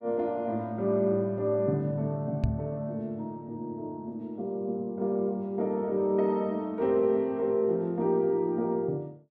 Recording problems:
microphone bump; at 2.5 s; peak +5 dB vs average level

